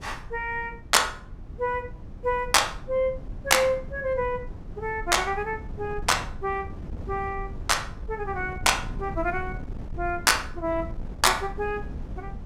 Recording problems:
wind noise; below 130 Hz, SNR 13 dB

